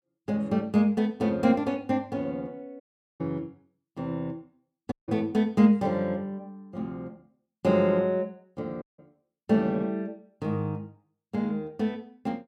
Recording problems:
audio cutting out; at 3 s, at 5 s and at 9 s

